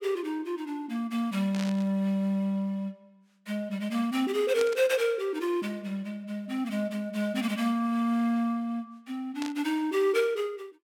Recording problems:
static burst; at 1.5 s, at 4.5 s and at 9.5 s; peak -3 dB vs average level

